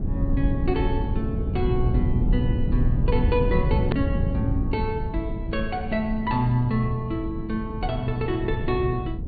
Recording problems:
treble missing; nothing above 4.6 kHz
rumble; below 140 Hz, SNR 0 dB
click at an edit; at 4 s

